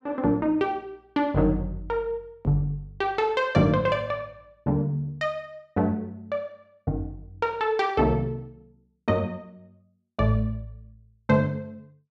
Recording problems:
none

